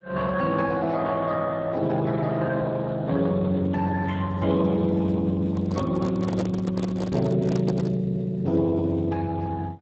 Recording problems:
codec artefacts; Speex, log-spectral distance 3 dB
microphone handling noise; from 5.5 to 8 s; peak -1 dB vs average level

